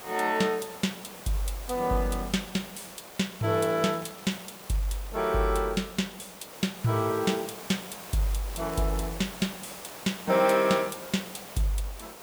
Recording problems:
hiss; SNR 13 dB
crackling; from 2 to 5 s and from 7 to 10 s; loose cable, SNR 24 dB

